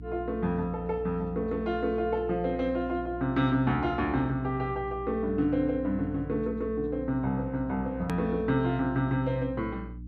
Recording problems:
electrical hum; 60 Hz, harmonics up to 300 Hz, SNR 13 dB
edit click; at 8 s

